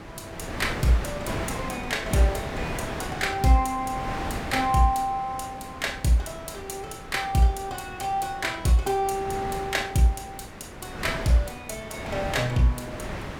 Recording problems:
wind on the microphone; below 1.4 kHz, SNR 9 dB

